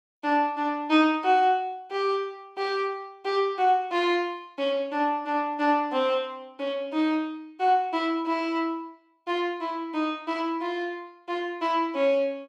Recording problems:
none

